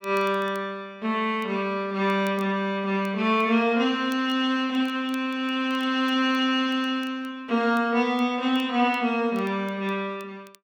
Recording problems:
crackle; vinyl, SNR 29 dB

